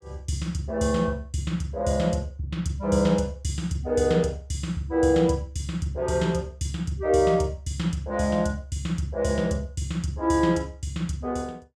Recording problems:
none

